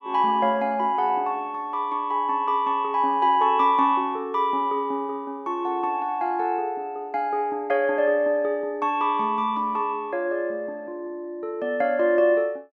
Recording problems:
none

